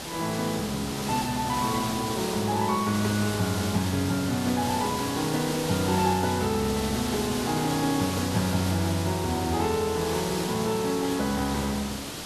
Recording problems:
background hiss; slope -3 dB per octave, SNR 5 dB

